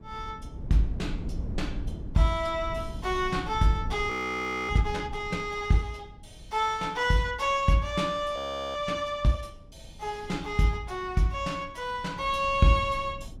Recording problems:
wind noise; below 150 Hz, SNR 13 dB
frozen audio; at 4 s for 0.5 s and at 8.5 s

